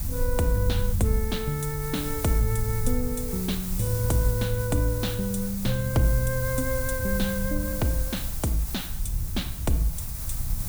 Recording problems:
hiss; SNR 7 dB
rumble; below 80 Hz, SNR 6 dB

